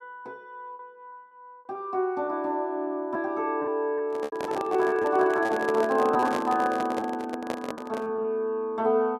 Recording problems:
lost packets; 7% of the sound replaced, filled with repeated pitch periods
microphone handling noise; from 4 to 8 s; peak 0 dB vs average level

